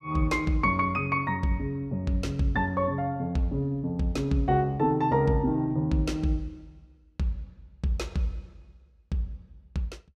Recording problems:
none

